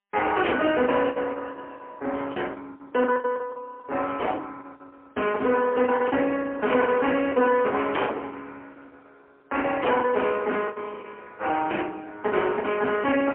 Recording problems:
telephone audio; 300 Hz to 3.1 kHz, AMR-NB, then MP3
distortion; soft clipping, signal-to-distortion ratio 7 dB
lost packets; 12% of the sound replaced, filled with the last packet

